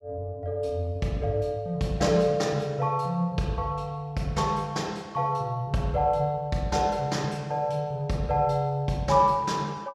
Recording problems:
none

